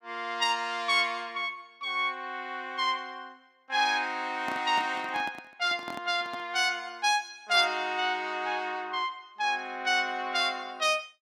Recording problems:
microphone handling noise; from 4.5 to 6.5 s; peak -6 dB vs average level

